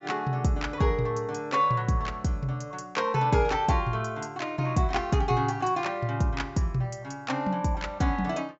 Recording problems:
treble missing; nothing above 8 kHz

